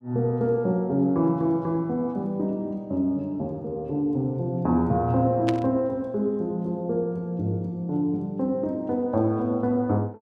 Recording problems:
static burst; at 5.5 s; peak -3 dB vs average level

